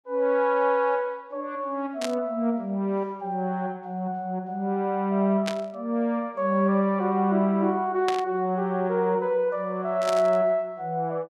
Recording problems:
static burst; 4 times, first at 2 s; peak -2 dB vs average level

